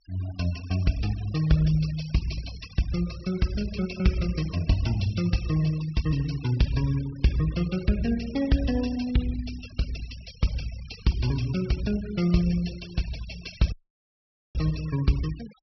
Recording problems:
low-pass filter; nothing above 5.5 kHz
noise reduction artefacts; signal-to-artefact ratio 17 dB
audio cutting out; at 14 s for 1 s

